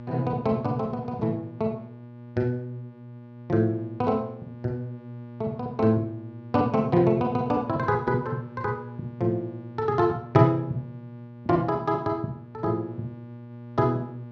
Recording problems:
hum; 60 Hz, harmonics up to 1.2 kHz, SNR 15 dB

